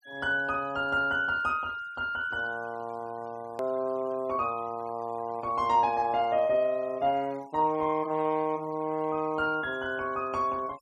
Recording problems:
denoising artefacts; signal-to-artefact ratio 26 dB
click at an edit; at 3.5 s

